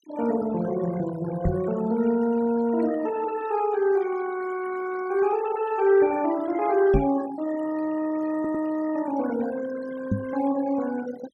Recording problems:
denoising artefacts; signal-to-artefact ratio 16 dB
microphone thump; at 1.5 s, at 7 s and at 10 s; peak +4 dB vs average level
audio stuttering; at 8.5 s

